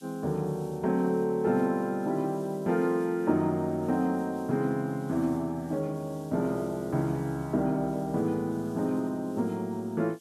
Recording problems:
background hiss; SNR 27 dB

